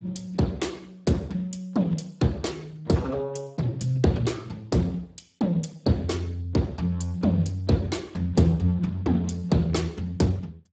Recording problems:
lossy codec; Speex, log-spectral distance 3 dB, nothing above 7.8 kHz

